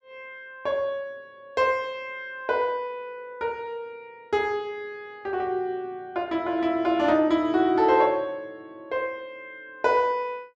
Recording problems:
none

